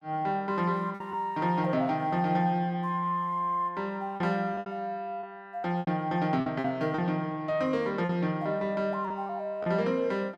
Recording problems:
lost packets; 5% of the sound replaced, filled with repeated pitch periods

